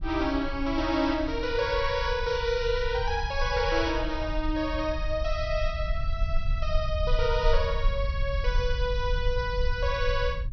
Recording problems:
treble cut off; nothing above 5.9 kHz
low-frequency rumble; below 58 Hz, SNR 4 dB

